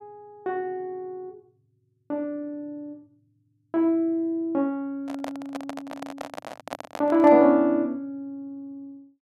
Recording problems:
microphone handling noise; from 5 to 7.5 s; peak -5 dB vs average level

